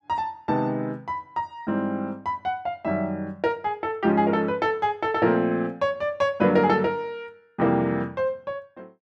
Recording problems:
none

